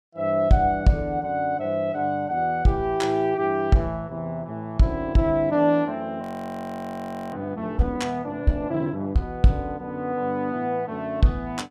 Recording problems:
audio freezing; at 6 s for 1 s

